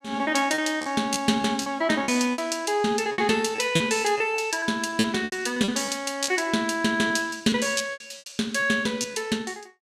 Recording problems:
packet loss; 11% of the sound replaced, filled with repeated pitch periods

